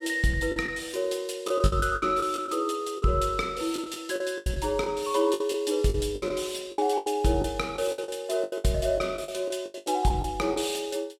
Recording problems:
packet loss; 13% of the sound replaced, filled with the last packet

